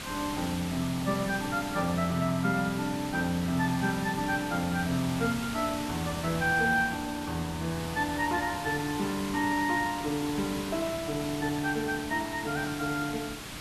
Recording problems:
background hiss; SNR 9 dB

